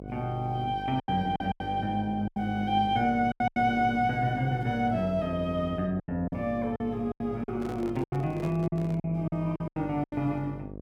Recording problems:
mains hum; 50 Hz, harmonics up to 750 Hz, SNR 13 dB
lost packets; 10% of the sound replaced, filled with silence
handling noise; from 7.5 to 9 s; peak -8 dB vs average level

